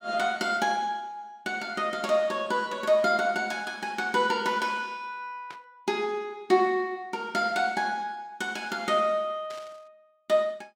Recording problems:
static burst; at 5.5 s and at 9.5 s; peak -13 dB vs average level

